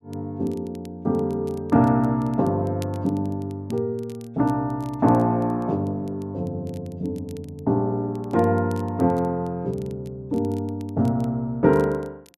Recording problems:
crackle; vinyl, SNR 29 dB

